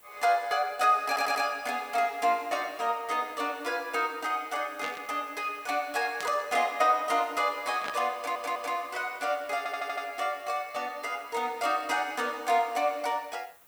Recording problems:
hiss; SNR 25 dB
audio stuttering; at 1 s, at 8 s and at 9.5 s
static burst; at 5 s, at 6 s and at 8 s; peak -4 dB vs average level

